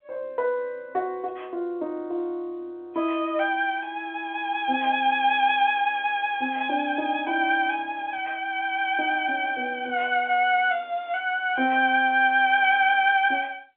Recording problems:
telephone audio; 280 Hz to 3.4 kHz, G.711

